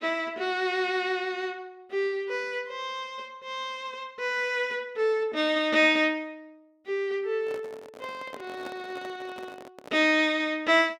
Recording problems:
microphone handling noise; from 7.5 to 10 s; peak -9 dB vs average level

